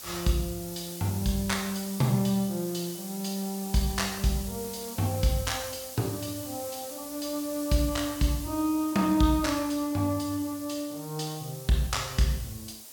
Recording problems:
background hiss; SNR 11 dB

